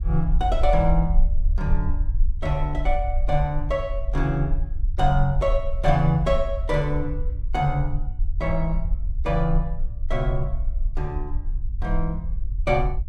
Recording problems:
rumble; below 48 Hz, SNR 2 dB

